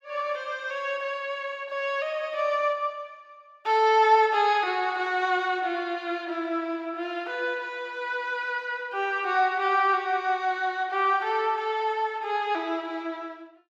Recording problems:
none

